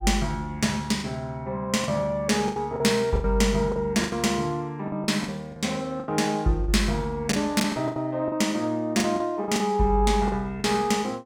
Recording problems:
packet loss; 10% of the sound replaced, filled with the last packet

